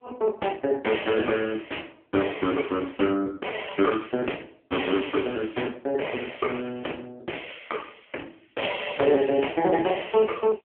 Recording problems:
telephone audio; 240 Hz to 3.3 kHz, AMR-NB

